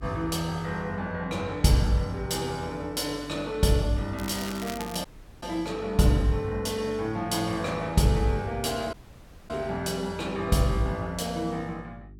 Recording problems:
electrical hum; 50 Hz, harmonics up to 400 Hz, SNR 20 dB
crackle; at 4 s; loose cable, SNR 13 dB
dropout; at 5 s and at 9 s for 0.5 s

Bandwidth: 17 kHz